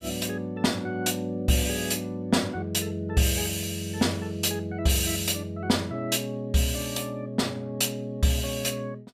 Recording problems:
none

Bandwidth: 15.5 kHz